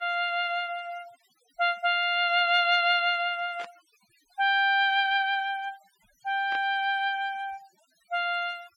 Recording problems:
denoising artefacts; signal-to-artefact ratio 27 dB
static burst; at 3.5 s and at 6.5 s; peak -13 dB vs average level

